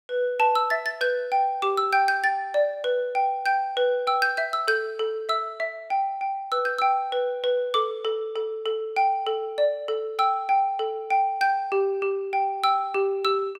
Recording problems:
none

